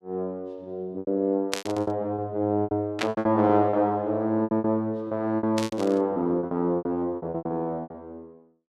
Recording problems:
lost packets; 17% of the sound replaced, filled with repeated pitch periods
burst of static; at 1.5 s, at 3 s and at 5.5 s; peak +3 dB vs average level

